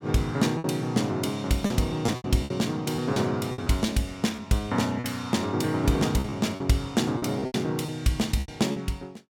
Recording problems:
lost packets; 9% of the sound replaced, filled with repeated pitch periods

